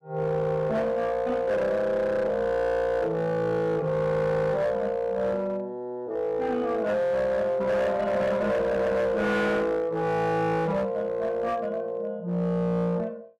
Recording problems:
distortion; hard clipping, uneven, signal-to-distortion ratio 11 dB

